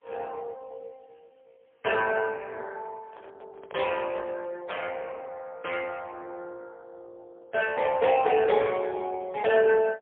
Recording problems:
telephone audio; 370 Hz to 3.3 kHz, AMR-NB, then MP3
handling noise; from 3 to 4.5 s; peak -15 dB vs average level

